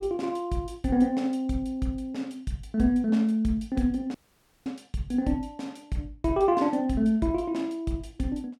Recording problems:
audio cutting out; at 4 s for 0.5 s

